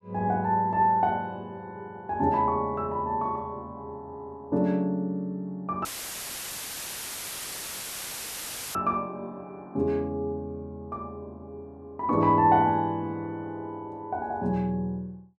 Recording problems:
audio cutting out; at 6 s for 3 s; filled with static

